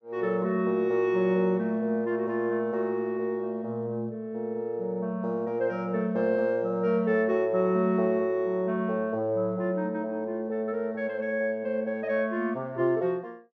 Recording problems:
none

